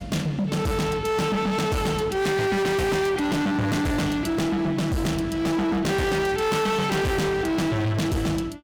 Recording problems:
distortion; hard clipping, uneven, signal-to-distortion ratio 6 dB

